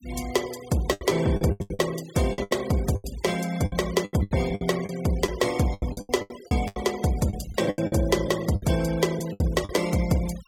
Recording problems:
noise reduction artefacts; signal-to-artefact ratio 17 dB
packet loss; 16% of the sound replaced, filled with the last packet

